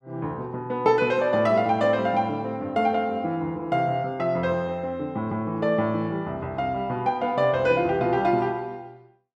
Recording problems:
none

